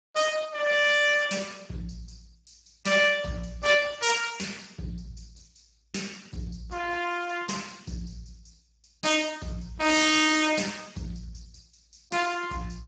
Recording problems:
codec artefacts; Speex, log-spectral distance 6 dB, nothing above 7.6 kHz

